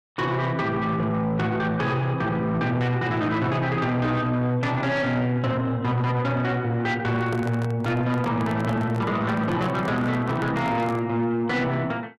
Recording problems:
distorted audio; soft clipping, signal-to-distortion ratio 10 dB
handling noise; from 7 to 11 s; peak -5 dB vs average level

